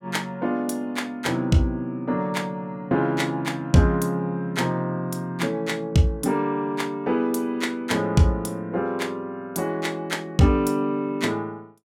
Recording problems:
none

